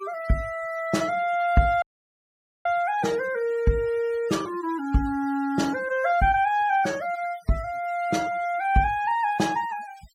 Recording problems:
denoising artefacts; signal-to-artefact ratio 21 dB
dropout; at 2 s for 1 s

